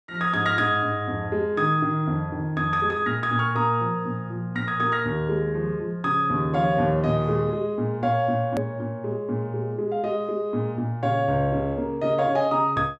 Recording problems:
click at an edit; at 8.5 s

